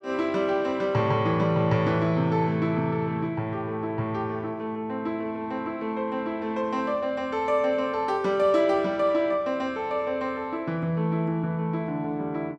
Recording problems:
none

